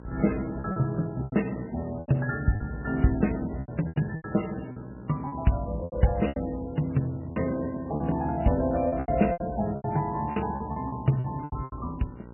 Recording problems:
lossy codec; MP3, log-spectral distance 3 dB, nothing above 2.9 kHz
hum; 60 Hz, harmonics up to 1.5 kHz, SNR 17 dB
lost packets; 12% of the sound replaced, filled with repeated pitch periods

